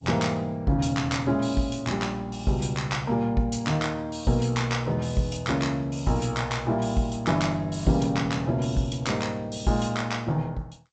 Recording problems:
lossy compression; G.722, log-spectral distance 3 dB, nothing above 7.8 kHz

